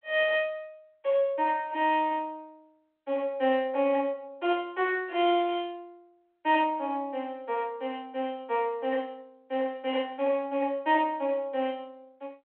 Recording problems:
phone line; 260 Hz to 3.3 kHz, G.726

